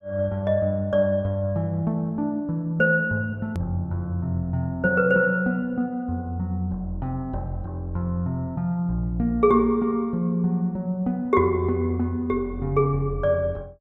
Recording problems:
edit click; at 3.5 s

